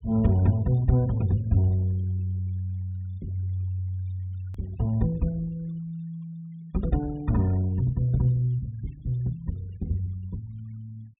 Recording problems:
treble missing; nothing above 4 kHz
noise reduction artefacts; signal-to-artefact ratio 27 dB
click at an edit; at 4.5 s

